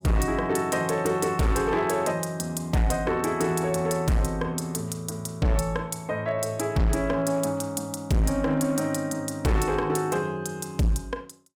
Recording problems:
distortion; hard clipping, signal-to-distortion ratio 8 dB

